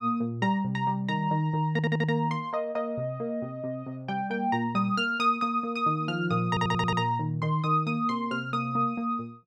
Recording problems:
stutter; at 1.5 s and at 6.5 s

